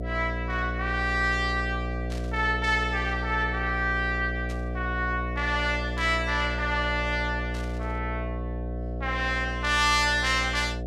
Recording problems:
electrical hum; 60 Hz, harmonics up to 720 Hz, SNR 5 dB
burst of static; 4 times, first at 2 s; peak -11 dB vs average level

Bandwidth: 15 kHz